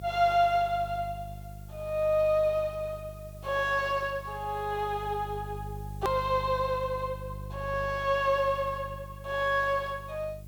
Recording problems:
hum; 50 Hz, harmonics up to 400 Hz, SNR 14 dB
background hiss; slope +2 dB per octave, SNR 28 dB
click at an edit; at 6 s

